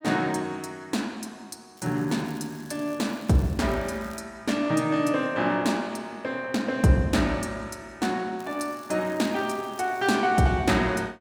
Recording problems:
crackle; from 2 to 4 s and from 8.5 to 10 s; loose cable, SNR 24 dB

